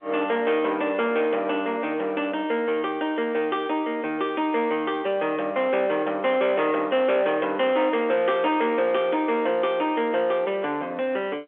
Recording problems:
phone line; 260 Hz to 3.5 kHz, G.711
distortion; soft clipping, signal-to-distortion ratio 12 dB

